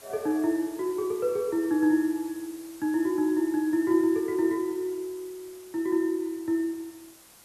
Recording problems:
background hiss; slope -2 dB per octave, SNR 22 dB

